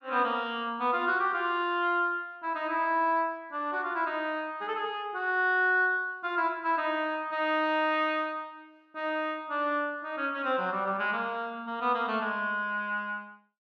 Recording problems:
none

